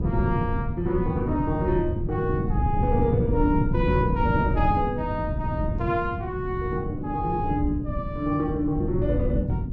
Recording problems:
wind noise; below 170 Hz, SNR 1 dB

